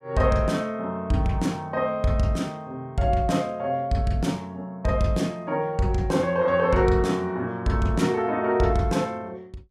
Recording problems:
none

